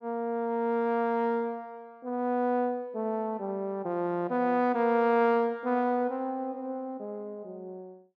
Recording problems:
none

